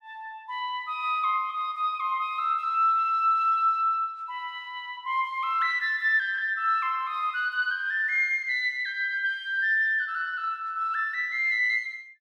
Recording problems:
none

